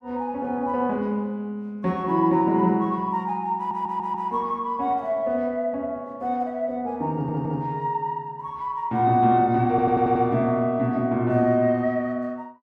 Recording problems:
audio stuttering; at 3.5 s, at 7 s and at 9.5 s

